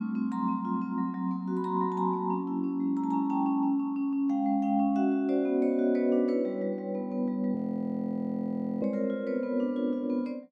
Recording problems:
audio freezing; at 7.5 s for 1.5 s

